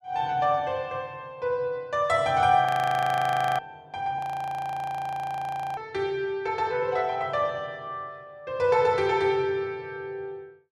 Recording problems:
audio freezing; at 2.5 s for 1 s and at 4 s for 1.5 s

